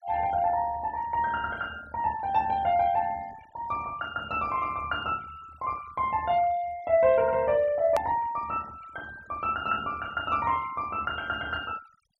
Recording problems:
denoising artefacts; signal-to-artefact ratio 22 dB
click at an edit; at 8 s

